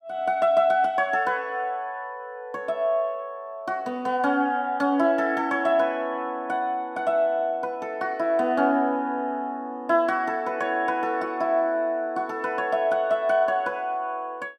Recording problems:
none

